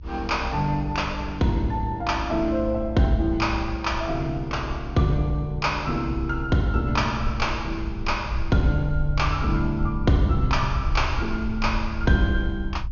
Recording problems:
treble missing; nothing above 6.7 kHz
low-frequency rumble; below 70 Hz, SNR 7 dB

